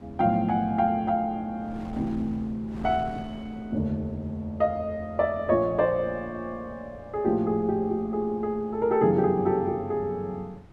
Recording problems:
wind noise; below 340 Hz, SNR 21 dB

